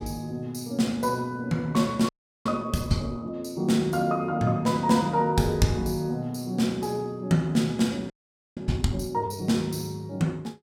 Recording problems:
frozen audio; at 2 s and at 8 s

